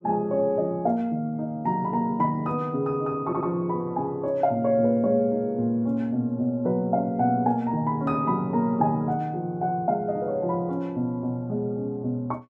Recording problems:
audio stuttering; at 3.5 s

